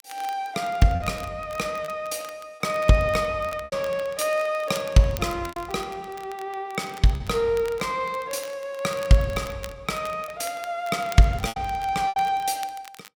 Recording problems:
crackle; vinyl, SNR 20 dB
lost packets; 4% of the sound replaced, filled with repeated pitch periods

